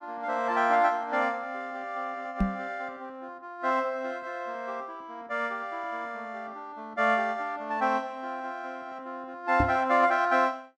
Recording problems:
microphone bump; at 2.5 s and at 9.5 s; peak +6 dB vs average level

